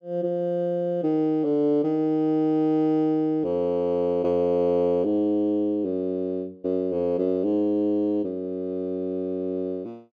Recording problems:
none

